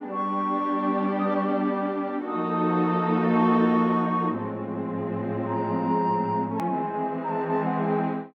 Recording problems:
hard cut with a click; at 6.5 s

